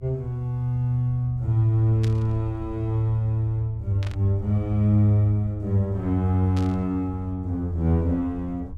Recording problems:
rumble; below 78 Hz, strongest tone 78 Hz, SNR 14 dB
static burst; at 2 s, at 4 s and at 6.5 s; peak -10 dB vs average level

